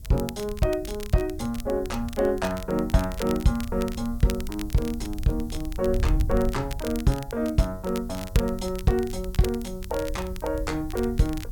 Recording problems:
background hiss; SNR 27 dB
wind on the microphone; below 78 Hz, SNR 9 dB
crackle; vinyl, SNR 16 dB

